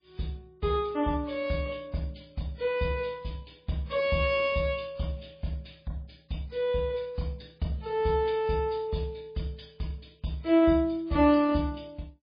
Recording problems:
lossy compression; MP3, log-spectral distance 4 dB, nothing above 5 kHz

